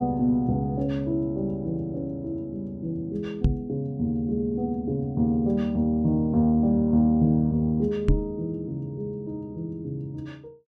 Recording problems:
knock on the microphone; at 3.5 s and at 8 s; peak +7 dB vs average level

